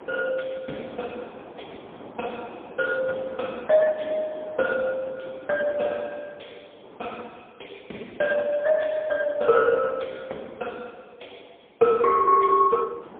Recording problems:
telephone audio; 260 Hz to 2.1 kHz, AMR-NB, then MP3
wind noise; below 860 Hz, SNR 20 dB

